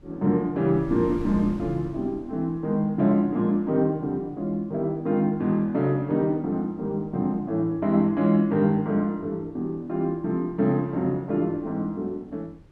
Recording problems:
wind on the microphone; below 230 Hz, SNR 21 dB

